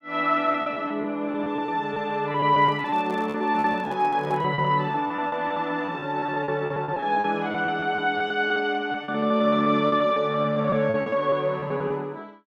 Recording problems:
lost packets; 15% of the sound replaced, filled with repeated pitch periods
microphone handling noise; from 2.5 to 4.5 s; peak -13 dB vs average level

